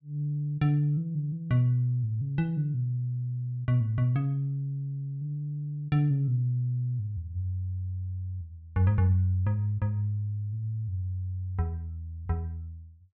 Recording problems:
none

